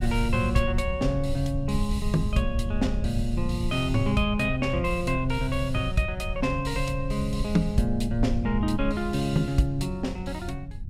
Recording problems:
rumble; below 86 Hz, SNR 6 dB

